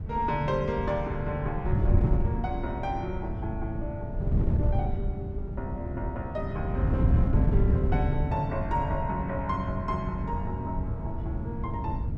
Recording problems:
wind on the microphone; below 140 Hz, SNR -3 dB

